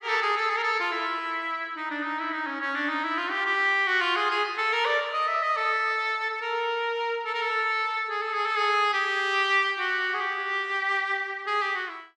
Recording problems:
none

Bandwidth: 14 kHz